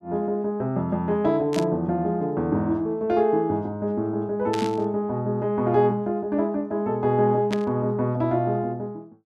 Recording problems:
burst of static; at 1.5 s, at 4.5 s and at 7.5 s; peak -4 dB vs average level

